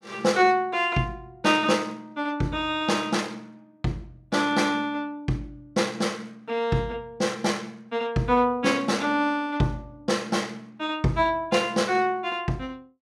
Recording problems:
none

